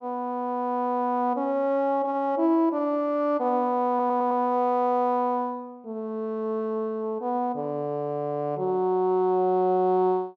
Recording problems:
audio stuttering; at 4 s

